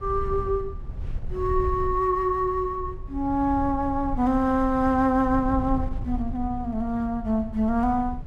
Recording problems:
wind on the microphone; below 84 Hz, SNR 10 dB

